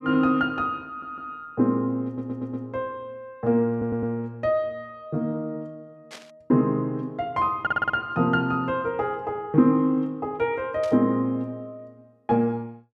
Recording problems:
audio stuttering; 4 times, first at 1 s
static burst; at 6 s and at 11 s; peak -12 dB vs average level

